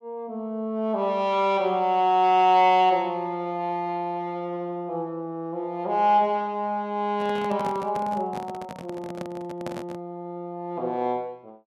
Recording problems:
microphone handling noise; from 7 to 10 s; peak -6 dB vs average level

